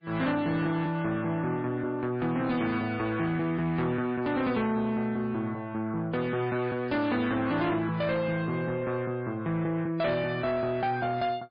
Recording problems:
lossy compression; MP3, log-spectral distance 2 dB, nothing above 4.2 kHz
distortion; soft clipping, signal-to-distortion ratio 12 dB

